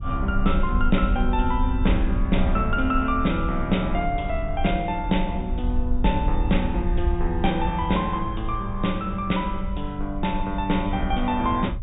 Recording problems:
treble cut off; nothing above 4 kHz
rumble; below 62 Hz, SNR 4 dB

